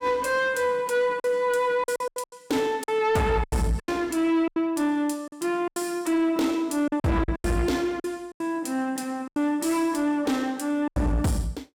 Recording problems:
distortion; soft clipping, signal-to-distortion ratio 11 dB
lost packets; 10% of the sound replaced, filled with silence

